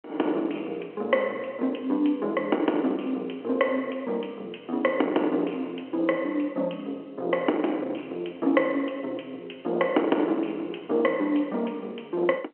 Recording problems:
phone line; 260 Hz to 3.8 kHz, G.711
distortion; soft clipping, signal-to-distortion ratio 15 dB

